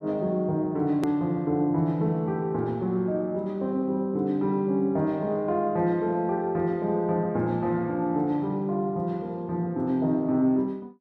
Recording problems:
hard cut with a click; at 1 s

